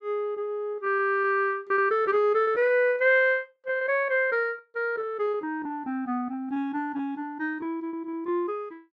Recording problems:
lost packets; 12% of the sound replaced, filled with repeated pitch periods

